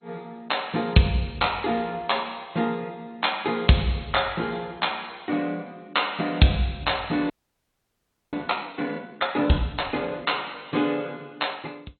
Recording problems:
codec artefacts; MP2, log-spectral distance 6 dB, nothing above 4.2 kHz
audio freezing; at 7.5 s for 1 s

